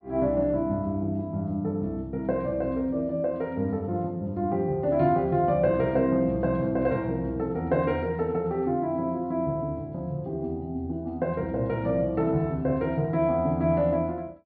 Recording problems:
low-pass filter; nothing above 5.5 kHz

